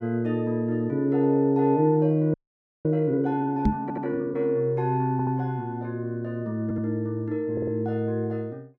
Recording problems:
audio freezing; at 2.5 s for 0.5 s
knock on the microphone; at 3.5 s; peak +7 dB vs average level
stutter; 4 times, first at 4 s

